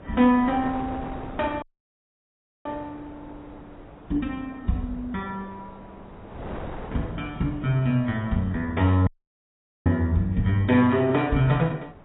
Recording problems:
lossy codec; AAC, log-spectral distance 2 dB, nothing above 3.7 kHz
wind on the microphone; below 780 Hz, SNR 17 dB
dropout; at 1.5 s for 1 s and at 9 s for 1 s

